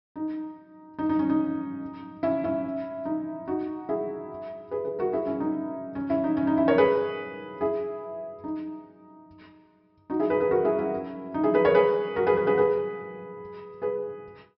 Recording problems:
low-pass filter; nothing above 5.4 kHz

